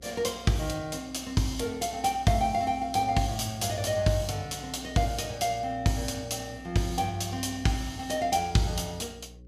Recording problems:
hum; 60 Hz, harmonics up to 540 Hz, SNR 20 dB

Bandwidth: 15 kHz